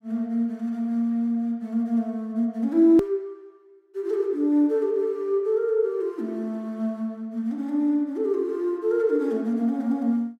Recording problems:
click at an edit; at 3 s

